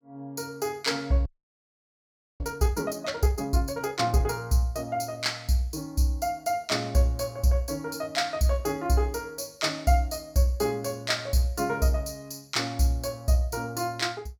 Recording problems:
frozen audio; at 1.5 s for 1 s

